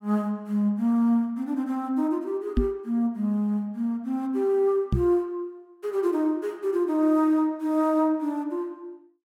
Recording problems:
knock on the microphone; at 2.5 s and at 5 s; peak +5 dB vs average level

